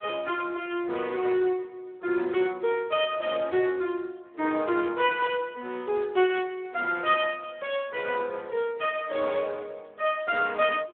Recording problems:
telephone audio; 260 Hz to 3.4 kHz, Speex

